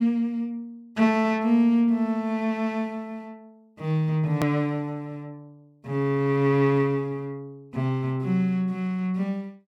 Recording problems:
hard cut with a click; at 4.5 s

